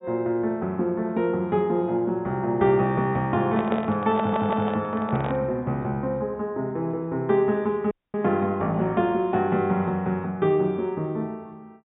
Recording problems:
low-pass filter; nothing above 4 kHz
handling noise; from 3.5 to 5.5 s; peak -1 dB vs average level
stutter; at 4 s
dropout; at 8 s

